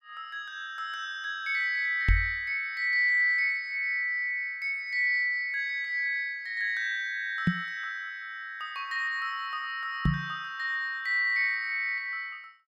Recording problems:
microphone bump; at 2 s, at 7.5 s and at 10 s; peak +7 dB vs average level

